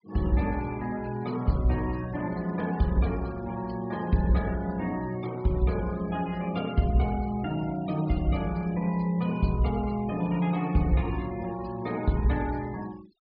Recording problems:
treble missing; nothing above 5.5 kHz
noise reduction artefacts; signal-to-artefact ratio 22 dB

